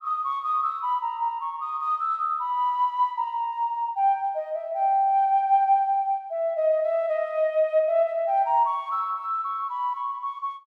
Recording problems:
none

